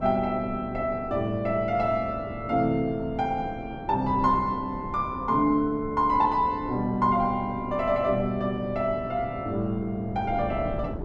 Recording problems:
wind noise; below 380 Hz, SNR 13 dB

